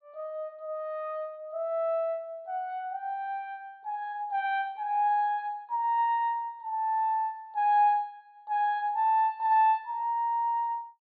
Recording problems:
treble missing; nothing above 4.5 kHz

